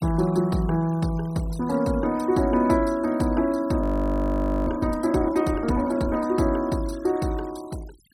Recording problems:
noise reduction artefacts; signal-to-artefact ratio 23 dB
frozen audio; at 4 s for 1 s

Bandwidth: 16 kHz